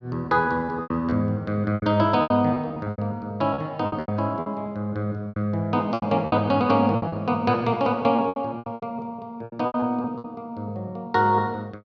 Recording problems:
packet loss; 13% of the sound replaced, filled with repeated pitch periods

